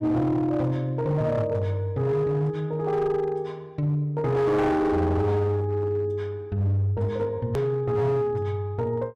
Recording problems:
distorted audio; hard clipping, uneven, signal-to-distortion ratio 11 dB
edit click; at 7.5 s

